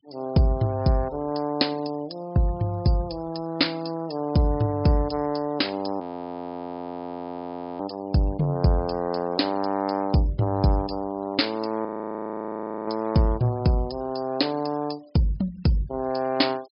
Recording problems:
treble cut off; nothing above 5.5 kHz
denoising artefacts; signal-to-artefact ratio 26 dB
audio freezing; at 6 s for 2 s and at 12 s for 1 s

